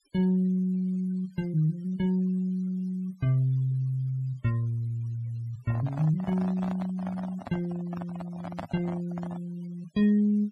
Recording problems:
denoising artefacts; signal-to-artefact ratio 24 dB
microphone handling noise; from 5.5 to 9.5 s; peak -4 dB vs average level

